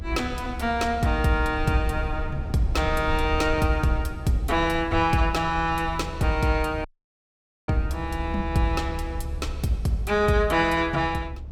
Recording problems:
low-frequency rumble; below 74 Hz, SNR 9 dB
dropout; at 7 s for 1 s

